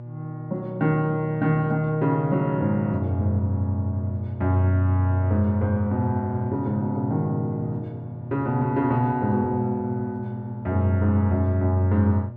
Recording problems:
hum; 60 Hz, harmonics up to 840 Hz, SNR 11 dB

